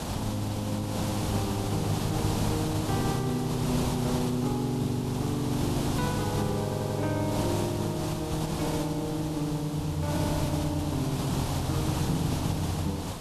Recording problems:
background hiss; SNR 3 dB
stutter; at 6.5 s

